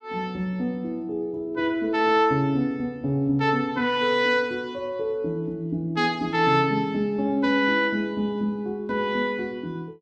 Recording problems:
none

